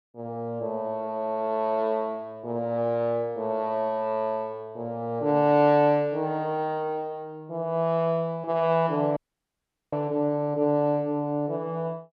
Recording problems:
dropout; at 9 s for 1 s

